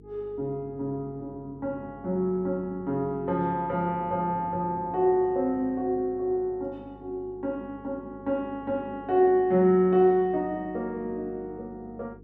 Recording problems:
mains hum; 50 Hz, harmonics up to 450 Hz, SNR 23 dB

